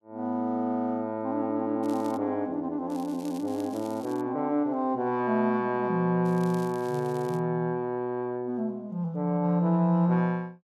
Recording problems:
crackling; at 2 s, from 3 to 4 s and from 6.5 to 7.5 s; loose cable, SNR 23 dB

